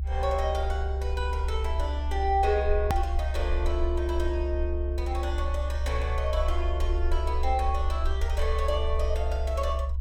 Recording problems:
low-frequency rumble; below 68 Hz, strongest tone 68 Hz, SNR -1 dB
hard cut with a click; at 3 s

